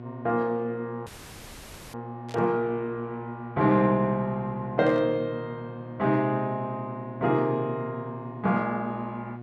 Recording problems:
electrical hum; 60 Hz, harmonics up to 1.4 kHz, SNR 13 dB
dropout; at 1 s for 1 s
burst of static; at 2.5 s and at 5 s; peak -13 dB vs average level

